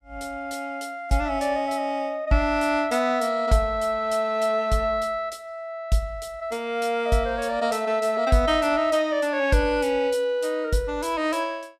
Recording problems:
none

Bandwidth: 15 kHz